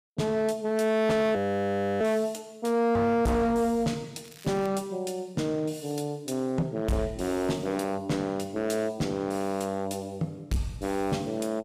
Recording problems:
distortion; hard clipping, signal-to-distortion ratio 8 dB
audio freezing; at 1.5 s for 0.5 s
crackling; at 4 s; loose cable, SNR 23 dB

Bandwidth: 15 kHz